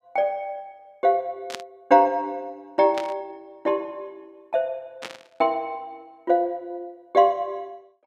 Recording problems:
static burst; at 1.5 s, at 3 s and at 5 s; peak -5 dB vs average level

